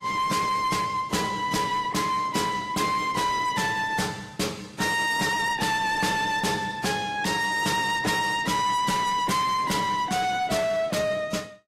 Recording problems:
lossy compression; AAC, log-spectral distance 4 dB
distortion; hard clipping, signal-to-distortion ratio 8 dB

